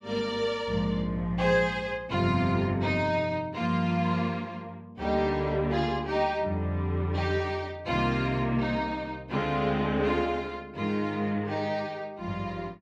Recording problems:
none

